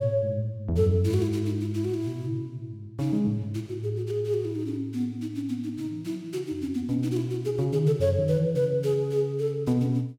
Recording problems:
none

